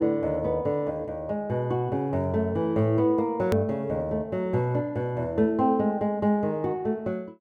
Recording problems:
hard cut with a click; at 3.5 s

